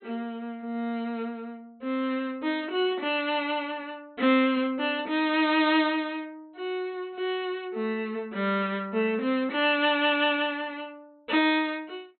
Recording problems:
treble cut off; nothing above 4.2 kHz

